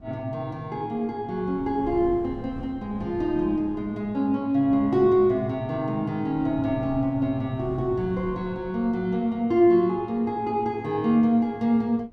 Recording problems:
wind on the microphone; below 230 Hz, SNR 19 dB

